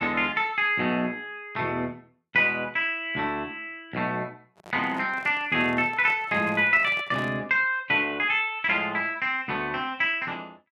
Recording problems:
microphone handling noise; from 4.5 to 7.5 s; peak -12 dB vs average level

